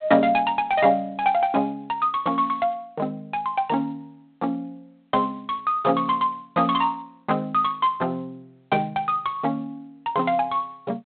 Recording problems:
telephone audio; 300 Hz to 3.7 kHz, G.726

